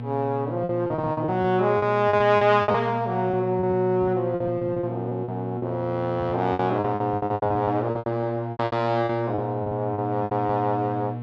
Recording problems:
hum; 60 Hz, harmonics up to 1.1 kHz, SNR 9 dB
packet loss; 16% of the sound replaced, filled with repeated pitch periods

